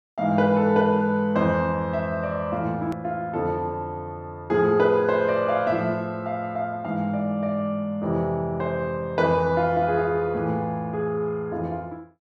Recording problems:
edit click; at 3 s

